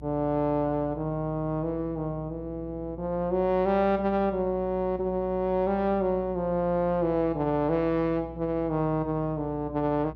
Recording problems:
hum; 60 Hz, harmonics up to 480 Hz, SNR 18 dB

